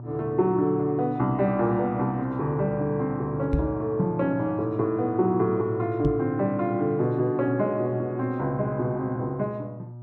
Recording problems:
electrical hum; 60 Hz, harmonics up to 960 Hz, SNR 14 dB
microphone bump; at 3.5 s and at 6 s; peak +4 dB vs average level

